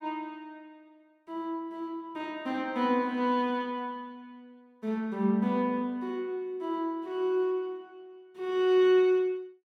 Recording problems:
none

